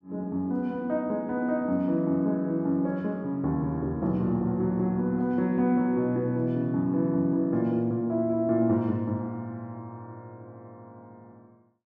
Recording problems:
none

